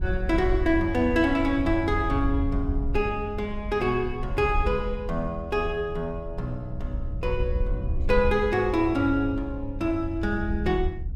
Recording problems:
wind on the microphone; below 70 Hz, SNR 7 dB

